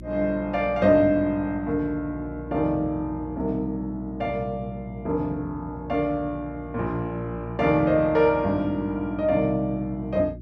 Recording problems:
hum; 60 Hz, harmonics up to 360 Hz, SNR 15 dB

